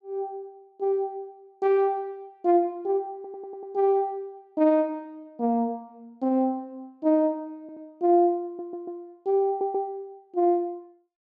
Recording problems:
stutter; 4 times, first at 3 s

